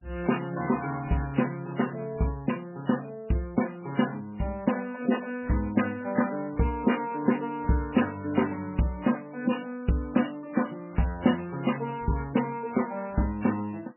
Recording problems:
lossy compression; MP3, then MP3, log-spectral distance 5 dB, nothing above 2.9 kHz

